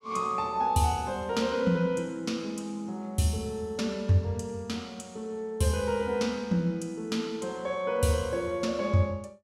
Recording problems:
none

